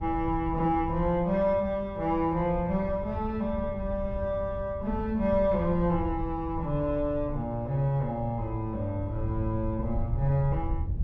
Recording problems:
wind on the microphone; below 92 Hz, SNR 9 dB

